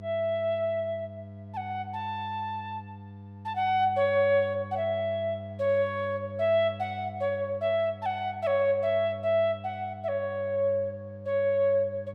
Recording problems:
hum; 50 Hz, harmonics up to 700 Hz, SNR 15 dB

